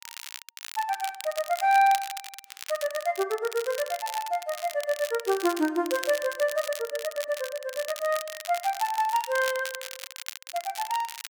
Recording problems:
crackling; vinyl, SNR 11 dB

